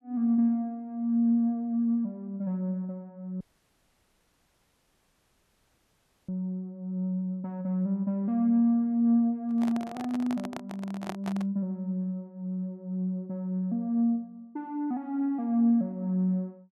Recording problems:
dropout; at 3.5 s for 3 s
microphone handling noise; from 9.5 to 11 s; peak -2 dB vs average level

